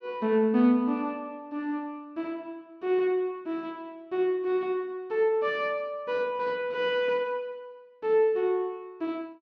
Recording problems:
none

